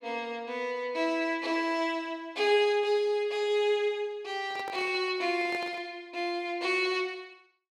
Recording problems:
microphone handling noise; from 4.5 to 6 s; peak -8 dB vs average level

